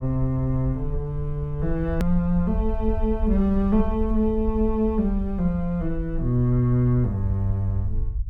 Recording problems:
low-frequency rumble; below 64 Hz, SNR 7 dB
click at an edit; at 2 s

